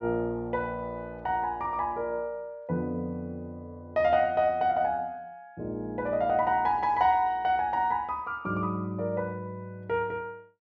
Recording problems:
treble cut off; nothing above 8 kHz

